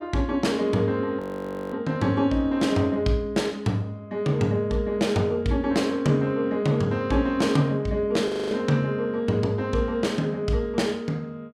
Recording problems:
frozen audio; at 1 s for 0.5 s and at 8.5 s

